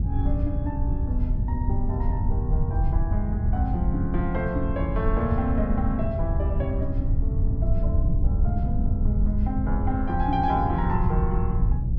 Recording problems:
wind on the microphone; below 96 Hz, SNR -3 dB

